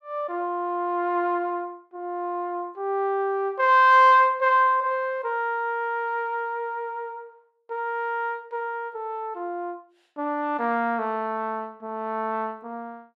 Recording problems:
none

